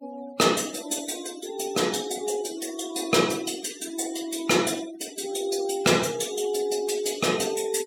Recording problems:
noise reduction artefacts; signal-to-artefact ratio 17 dB

